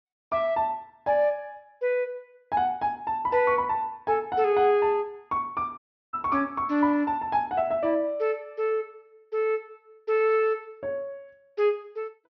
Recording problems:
treble missing; nothing above 6 kHz
dropout; at 6 s

